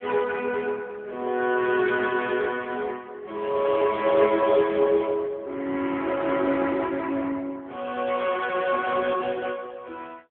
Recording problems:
phone line; 280 Hz to 2.7 kHz, AMR-NB

